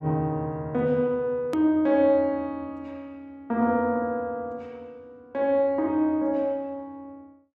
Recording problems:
edit click; at 1.5 s

